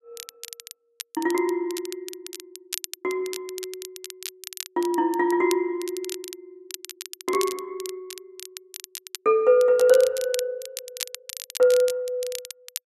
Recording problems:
crackling; vinyl, SNR 13 dB

